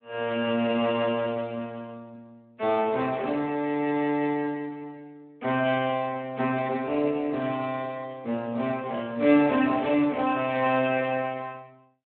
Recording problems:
phone line; 300 Hz to 3.5 kHz, Speex

